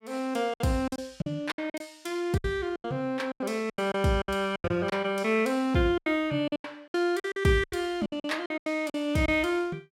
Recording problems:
lost packets; 15% of the sound replaced, filled with silence

